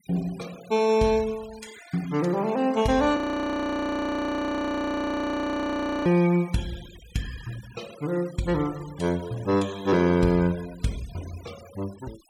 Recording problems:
noise reduction artefacts; signal-to-artefact ratio 21 dB
frozen audio; at 3 s for 3 s

